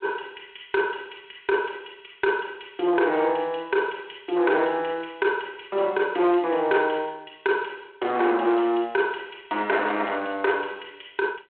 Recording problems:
phone line; 320 Hz to 3.4 kHz, G.726
distortion; soft clipping, signal-to-distortion ratio 13 dB

